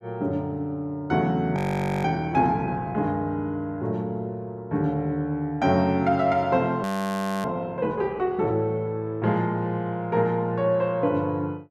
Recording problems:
audio freezing; at 1.5 s and at 7 s for 0.5 s

